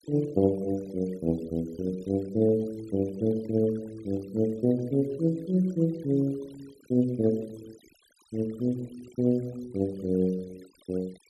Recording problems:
noise reduction artefacts; signal-to-artefact ratio 25 dB

